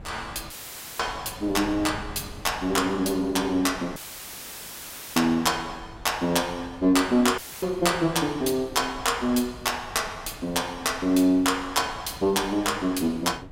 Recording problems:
wind on the microphone; below 240 Hz, SNR 20 dB
dropout; at 0.5 s, at 4 s for 1 s and at 7.5 s; filled with static

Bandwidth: 16 kHz